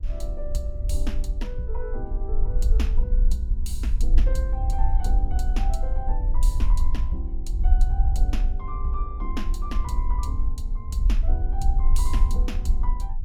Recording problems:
low-frequency rumble; below 48 Hz, SNR -8 dB

